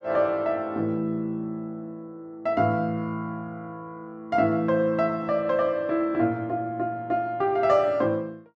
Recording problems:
none

